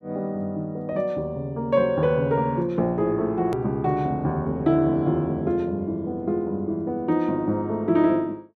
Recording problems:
edit click; at 3.5 s

